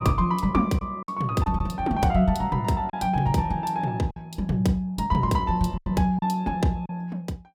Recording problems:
packet loss; 4% of the sound replaced, filled with silence

